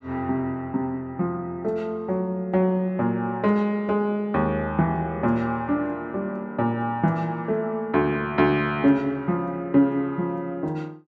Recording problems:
none

